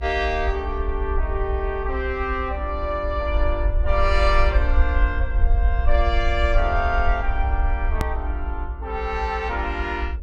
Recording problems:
electrical hum; 50 Hz, harmonics up to 600 Hz, SNR 18 dB
low-frequency rumble; below 62 Hz, SNR 0 dB
click at an edit; at 8 s

